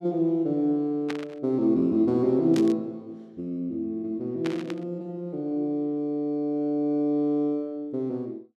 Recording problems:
burst of static; at 1 s, at 2.5 s and at 4.5 s; peak -4 dB vs average level

